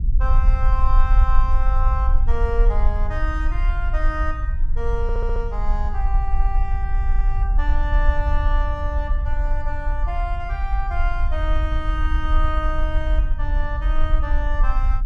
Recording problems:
rumble; below 50 Hz, SNR -6 dB
audio stuttering; at 5 s

